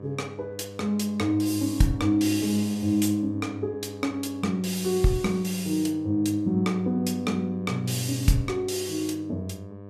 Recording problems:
hum; 50 Hz, harmonics up to 1.2 kHz, SNR 15 dB

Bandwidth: 14.5 kHz